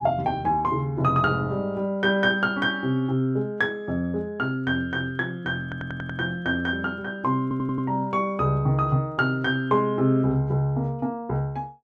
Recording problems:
audio stuttering; at 5.5 s and at 7.5 s

